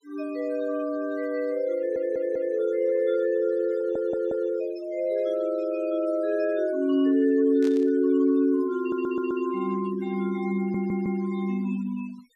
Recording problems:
denoising artefacts; signal-to-artefact ratio 24 dB
audio stuttering; 4 times, first at 2 s
static burst; at 7.5 s; peak -13 dB vs average level

